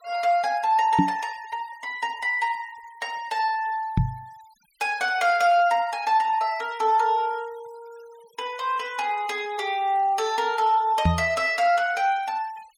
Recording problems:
denoising artefacts; signal-to-artefact ratio 25 dB
knock on the microphone; at 1 s, at 4 s and at 11 s; peak +7 dB vs average level

